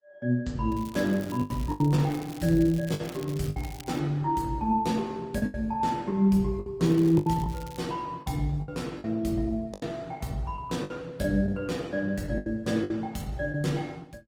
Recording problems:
lossy compression; Opus, log-spectral distance 2 dB, nothing above 19 kHz
packet loss; 9% of the sound replaced, filled with the last packet
crackling; from 0.5 to 4 s and at 7 s; loose cable, SNR 20 dB

